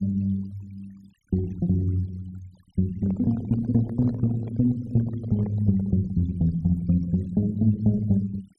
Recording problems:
noise reduction artefacts; signal-to-artefact ratio 25 dB
microphone handling noise; from 3 to 6 s; peak -10 dB vs average level

